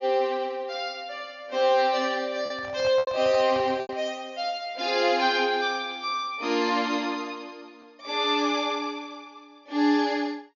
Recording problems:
low-pass filter; nothing above 6.9 kHz
packet loss; 2% of the sound replaced, filled with repeated pitch periods
microphone handling noise; from 2.5 to 4 s; peak -10 dB vs average level

